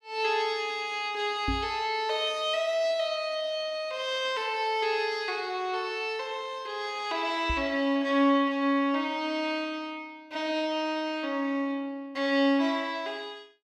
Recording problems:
knock on the microphone; at 1.5 s and at 7.5 s; peak +1 dB vs average level

